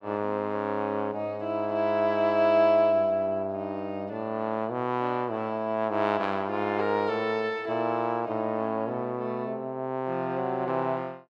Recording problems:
none

